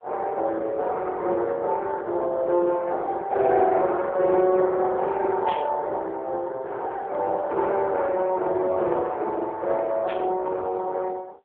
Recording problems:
phone line; 300 Hz to 2 kHz, AMR-NB
static burst; at 5.5 s and at 10 s; peak -7 dB vs average level

